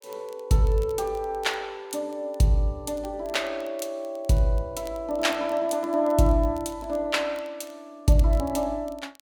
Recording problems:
crackling; vinyl, SNR 27 dB

